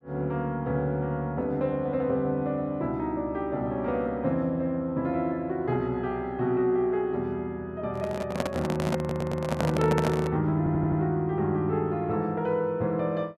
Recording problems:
handling noise; from 8 to 10 s; peak +3 dB vs average level
stutter; at 9 s and at 11 s

